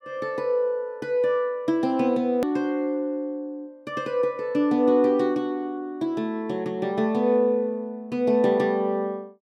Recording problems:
edit click; at 2.5 s

